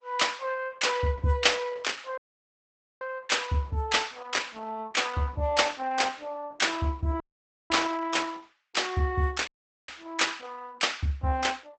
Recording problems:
lossy compression; Opus, log-spectral distance 4 dB, nothing above 8 kHz
dropout; at 2 s for 1 s, at 7 s for 0.5 s and at 9.5 s

